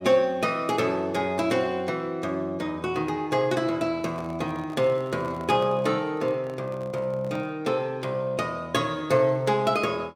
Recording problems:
handling noise; from 4 to 7.5 s; peak -11 dB vs average level

